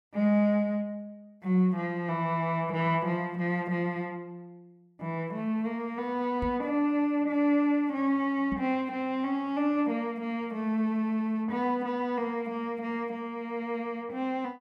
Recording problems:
microphone bump; at 6.5 s and at 8.5 s; peak -1 dB vs average level

